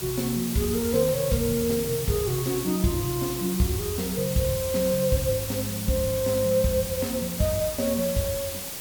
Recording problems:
background hiss; slope -1 dB per octave, SNR 6 dB

